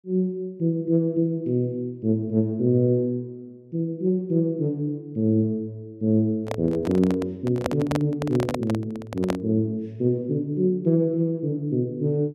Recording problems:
microphone handling noise; from 6.5 to 9.5 s; peak +2 dB vs average level

